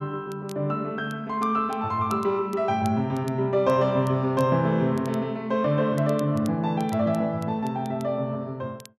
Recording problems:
crackling; vinyl, SNR 26 dB

